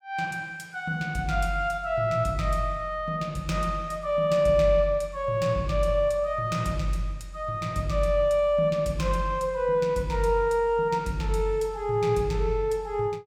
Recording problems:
none

